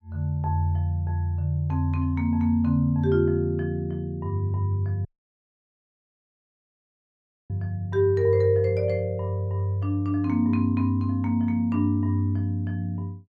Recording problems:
dropout; at 5 s for 2.5 s

